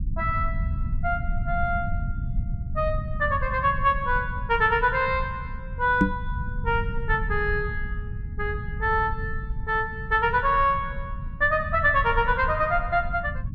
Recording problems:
rumble; below 100 Hz, SNR 8 dB
microphone bump; at 6 s; peak +7 dB vs average level

